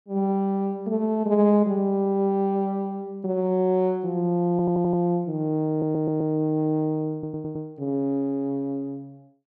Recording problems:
stutter; at 4.5 s, at 5.5 s and at 7 s

